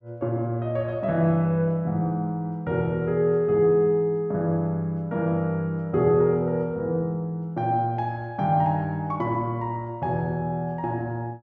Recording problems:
none

